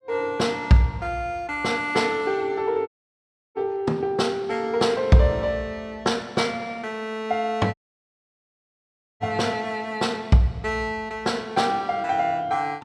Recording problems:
dropout; at 3 s for 0.5 s and at 7.5 s for 1.5 s

